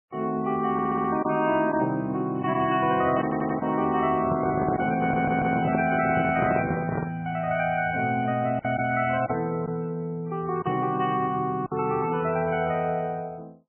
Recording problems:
lossy codec; MP3, log-spectral distance 3 dB, nothing above 3 kHz
packet loss; 2% of the sound replaced, filled with silence
stutter; at 0.5 s, at 3 s and at 5 s
handling noise; from 4 to 7 s; peak +2 dB vs average level

